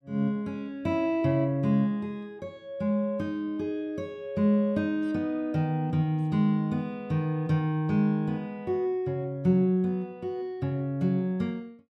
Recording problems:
none

